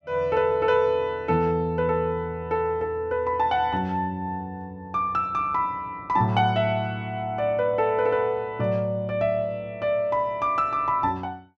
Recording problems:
none

